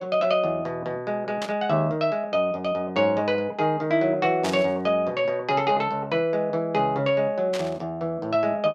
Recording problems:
static burst; at 1.5 s, at 4.5 s and at 7.5 s; peak -3 dB vs average level

